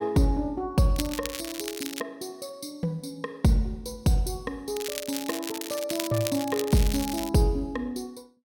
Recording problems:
crackling; from 1 to 2 s and from 5 to 7.5 s; loose cable, SNR 7 dB

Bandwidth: 17 kHz